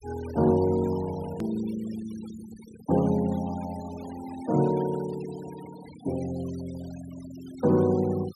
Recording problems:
denoising artefacts; signal-to-artefact ratio 20 dB
click at an edit; at 1.5 s

